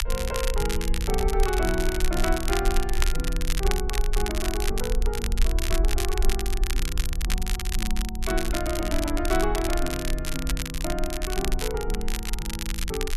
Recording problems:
low-frequency rumble; below 50 Hz, strongest tone 24 Hz, SNR 0 dB
crackling; vinyl, SNR 3 dB

